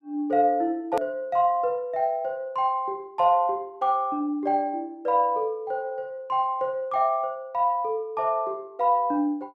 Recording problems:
hard cut with a click; at 1 s

